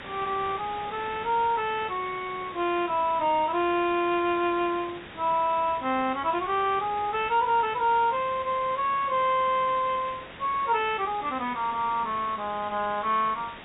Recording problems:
treble cut off; nothing above 4 kHz
background hiss; SNR 15 dB

